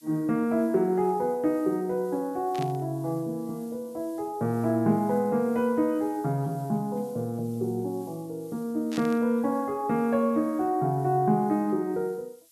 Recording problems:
background hiss; slope +4 dB per octave, SNR 27 dB
static burst; at 2.5 s and at 9 s; peak -7 dB vs average level

